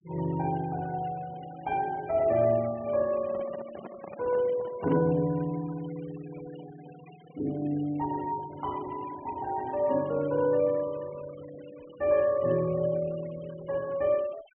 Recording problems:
treble cut off; nothing above 3.1 kHz
denoising artefacts; signal-to-artefact ratio 22 dB
microphone handling noise; from 3 to 5 s; peak -7 dB vs average level

